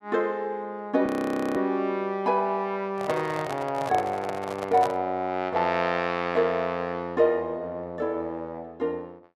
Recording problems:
frozen audio; at 1 s for 0.5 s
handling noise; from 3 to 5 s; peak 0 dB vs average level

